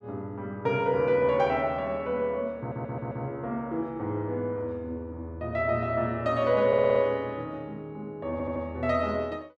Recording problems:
stutter; at 2.5 s, at 6.5 s and at 8.5 s

